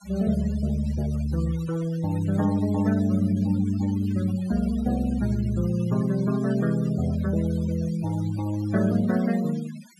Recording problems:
denoising artefacts; signal-to-artefact ratio 18 dB

